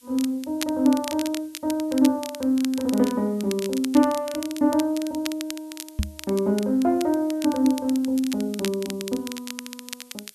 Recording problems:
hiss; SNR 28 dB
crackle; vinyl, SNR 13 dB
microphone bump; at 6 s; peak +2 dB vs average level

